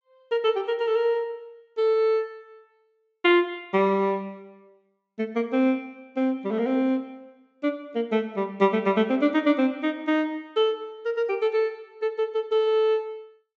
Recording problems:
treble missing; nothing above 8 kHz

